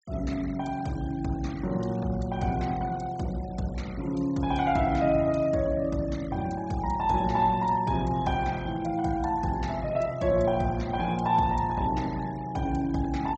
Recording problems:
treble missing; nothing above 8 kHz
noise reduction artefacts; signal-to-artefact ratio 22 dB

